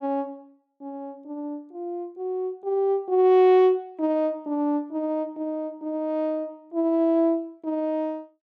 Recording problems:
none

